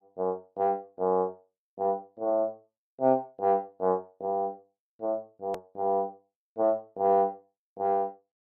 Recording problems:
click at an edit; at 5.5 s

